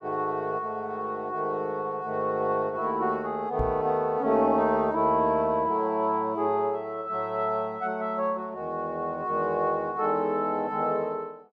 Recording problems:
microphone bump; at 3.5 s; peak -1 dB vs average level

